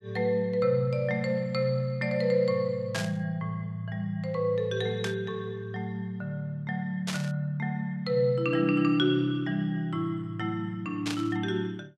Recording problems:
static burst; 4 times, first at 3 s; peak 0 dB vs average level

